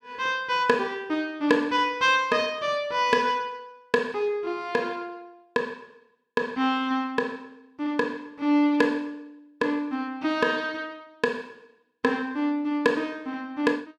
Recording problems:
none

